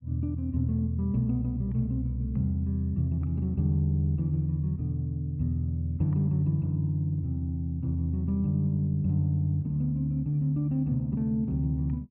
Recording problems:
none

